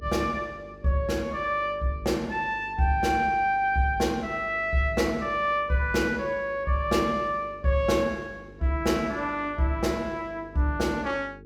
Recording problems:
hum; 50 Hz, harmonics up to 450 Hz, SNR 21 dB

